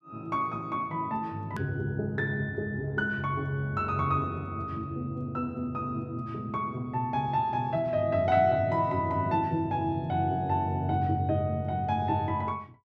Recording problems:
hard cut with a click; at 1.5 s

